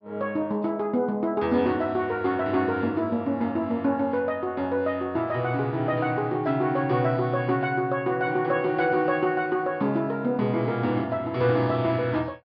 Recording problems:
treble missing; nothing above 5.5 kHz

